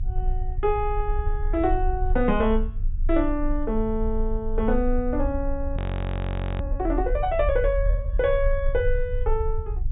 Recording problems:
treble missing; nothing above 4 kHz
rumble; below 52 Hz, strongest tone 26 Hz, SNR 3 dB
frozen audio; at 6 s for 1 s

